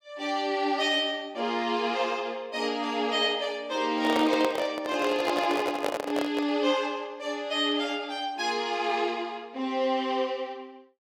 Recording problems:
handling noise; from 4 to 6.5 s; peak +3 dB vs average level

